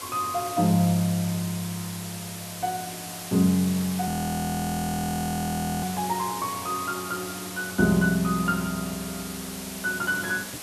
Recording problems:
hiss; slope -1 dB per octave, SNR 9 dB
audio freezing; at 4 s for 1.5 s

